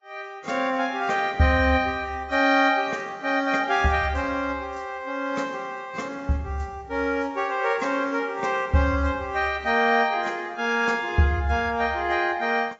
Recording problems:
lossy codec; AAC, log-spectral distance 2 dB, nothing above 7.3 kHz

